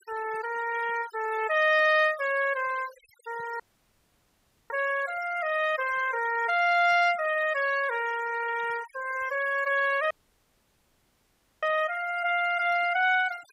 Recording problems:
denoising artefacts; signal-to-artefact ratio 17 dB
audio cutting out; at 3.5 s for 1 s and at 10 s for 1.5 s

